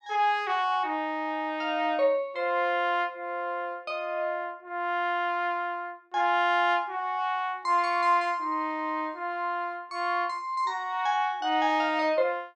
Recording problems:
none

